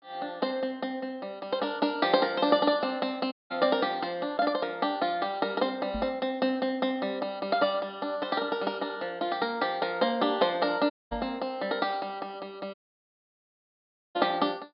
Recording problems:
treble missing; nothing above 5.5 kHz
audio cutting out; at 3.5 s, at 11 s and at 13 s for 1.5 s
microphone thump; at 6 s and at 11 s; peak -4 dB vs average level

